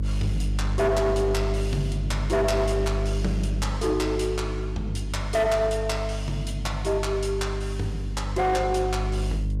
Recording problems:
distorted audio; hard clipping, signal-to-distortion ratio 12 dB
hum; 50 Hz, harmonics up to 300 Hz, SNR 2 dB

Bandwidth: 14.5 kHz